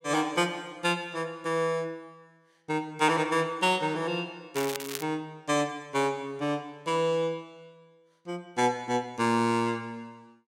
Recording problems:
crackling; at 4.5 s; loose cable, SNR 9 dB

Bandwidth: 16 kHz